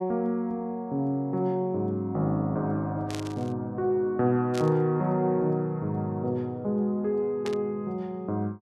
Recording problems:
burst of static; at 3 s, at 4.5 s and at 7.5 s; peak -6 dB vs average level

